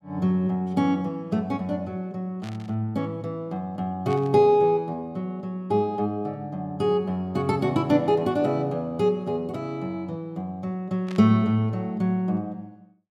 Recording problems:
burst of static; at 2.5 s, at 4 s and at 11 s; peak -12 dB vs average level

